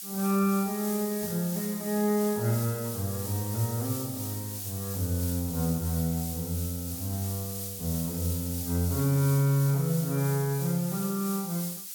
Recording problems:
background hiss; slope +6 dB per octave, SNR 6 dB

